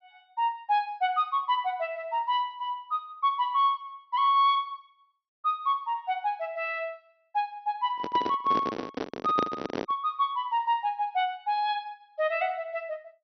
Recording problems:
treble cut off; nothing above 5.9 kHz
microphone handling noise; from 8 to 10 s; peak +3 dB vs average level

